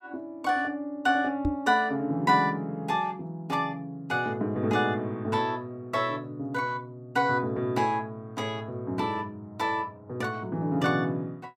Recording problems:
knock on the microphone; at 1.5 s; peak +4 dB vs average level

